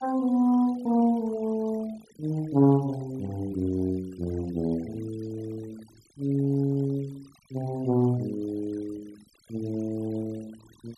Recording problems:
denoising artefacts; signal-to-artefact ratio 25 dB

